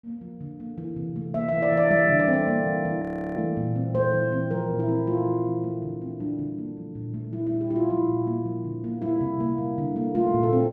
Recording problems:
audio freezing; at 3 s

